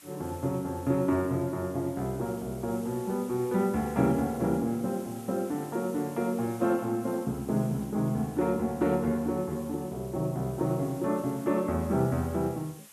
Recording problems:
background hiss; slope 0 dB per octave, SNR 20 dB

